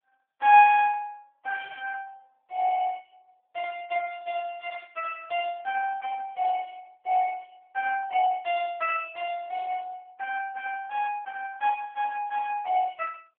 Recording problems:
telephone audio; 470 Hz to 2.9 kHz, AMR-NB

